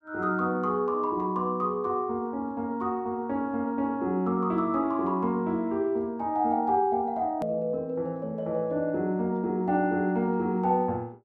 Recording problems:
hard cut with a click; at 7.5 s

